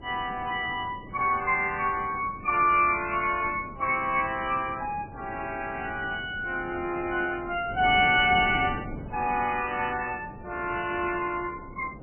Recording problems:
codec artefacts; MP3, log-spectral distance 3 dB, nothing above 3 kHz
wind on the microphone; below 360 Hz, SNR 16 dB

